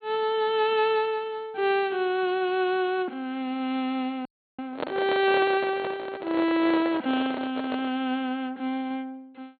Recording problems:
low-pass filter; nothing above 4.4 kHz
frozen audio; at 4.5 s
handling noise; from 4.5 to 8 s; peak 0 dB vs average level

